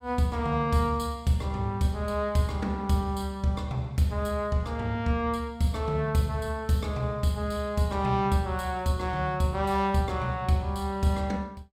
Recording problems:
none

